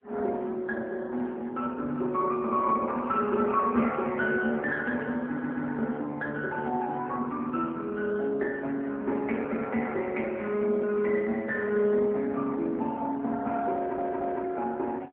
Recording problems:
telephone audio; 190 Hz to 3.3 kHz, AMR-NB
audio stuttering; at 5.5 s and at 14 s

